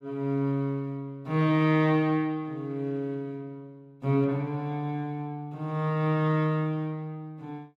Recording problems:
none

